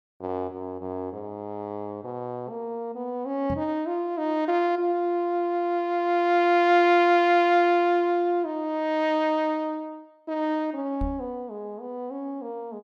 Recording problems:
microphone thump; at 3.5 s and at 11 s; peak -3 dB vs average level

